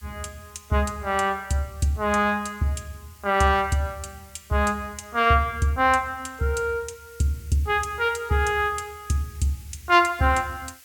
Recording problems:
hiss; SNR 26 dB

